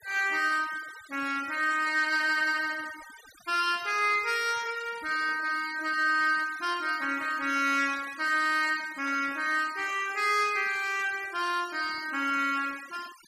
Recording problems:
noise reduction artefacts; signal-to-artefact ratio 19 dB

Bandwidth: 14.5 kHz